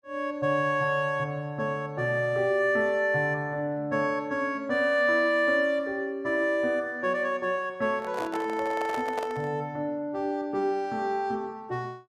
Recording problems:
microphone handling noise; from 8 to 9.5 s; peak -3 dB vs average level

